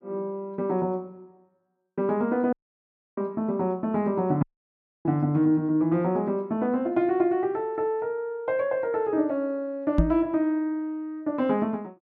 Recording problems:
audio cutting out; at 2.5 s for 0.5 s and at 4.5 s for 0.5 s
microphone thump; at 10 s; peak +8 dB vs average level

